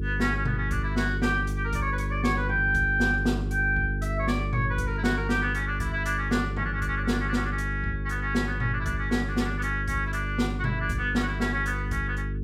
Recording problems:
electrical hum; 50 Hz, harmonics up to 450 Hz, SNR 3 dB

